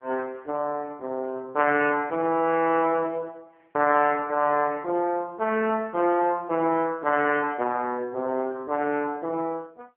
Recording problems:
phone line; 260 Hz to 3.1 kHz, AMR-NB

